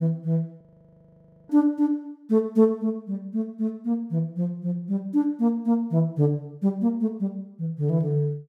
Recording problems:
frozen audio; at 0.5 s for 1 s

